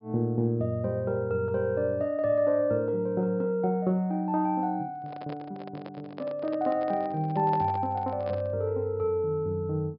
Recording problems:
treble missing; nothing above 5.5 kHz
handling noise; from 5 to 8.5 s; peak -7 dB vs average level

